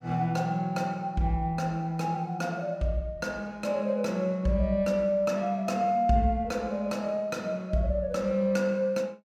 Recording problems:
none

